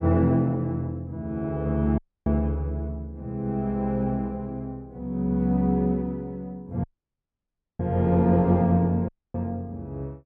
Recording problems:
audio cutting out; at 2 s, at 7 s for 1 s and at 9 s

